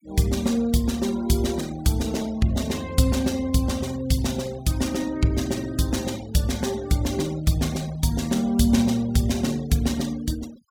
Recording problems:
noise reduction artefacts; signal-to-artefact ratio 21 dB

